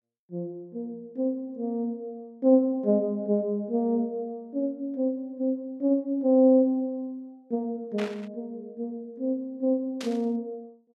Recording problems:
burst of static; at 8 s and at 10 s; peak -7 dB vs average level

